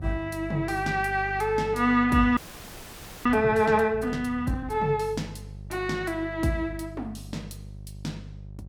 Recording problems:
hum; 50 Hz, harmonics up to 400 Hz, SNR 15 dB
frozen audio; at 2.5 s for 1 s

